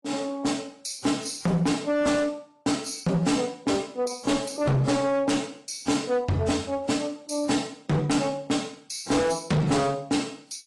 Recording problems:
codec artefacts; AAC, log-spectral distance 5 dB, nothing above 11 kHz
distortion; hard clipping, signal-to-distortion ratio 7 dB

